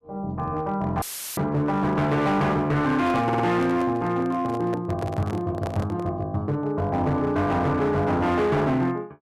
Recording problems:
distorted audio; hard clipping, signal-to-distortion ratio 11 dB
dropout; at 1 s; filled with static
microphone handling noise; from 3 to 6 s; peak -5 dB vs average level
stutter; at 3 s

